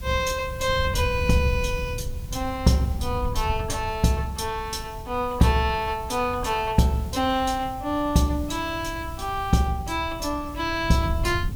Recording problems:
hiss; slope -2 dB per octave, SNR 22 dB
wind on the microphone; below 110 Hz, SNR 9 dB

